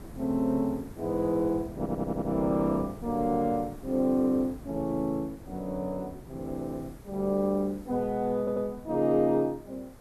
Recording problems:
background hiss; SNR 27 dB
wind on the microphone; below 270 Hz, SNR 18 dB
stutter; at 2 s and at 8.5 s

